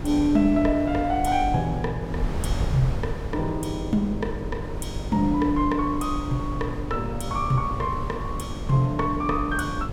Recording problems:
hum; 50 Hz, harmonics up to 600 Hz, SNR 12 dB
wind noise; below 110 Hz, SNR 9 dB

